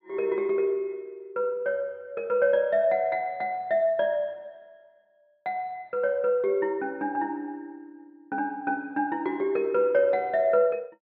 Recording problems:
treble missing; nothing above 5.5 kHz

